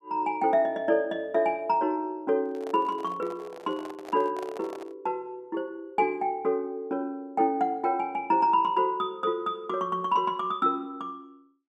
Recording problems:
microphone handling noise; from 2.5 to 5 s; peak -9 dB vs average level

